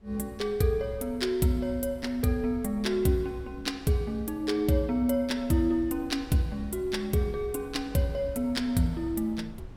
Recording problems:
wind noise; below 180 Hz, SNR 21 dB

